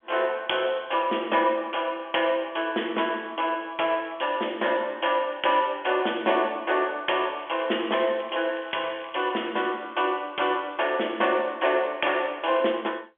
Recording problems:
phone line; 260 Hz to 3.4 kHz, G.711
crackle; from 7.5 to 9.5 s; loose cable, SNR 22 dB

